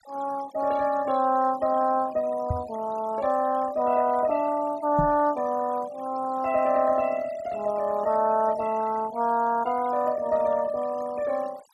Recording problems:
denoising artefacts; signal-to-artefact ratio 20 dB
microphone bump; at 2.5 s and at 5 s; peak +1 dB vs average level

